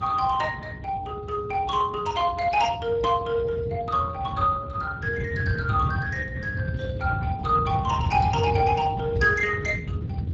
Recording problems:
lossy codec; Speex, log-spectral distance 3 dB
hum; 60 Hz, harmonics up to 480 Hz, SNR 21 dB
wind noise; below 150 Hz, SNR 6 dB

